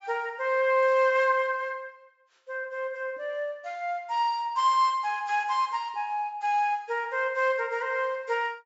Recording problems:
treble missing; nothing above 8 kHz

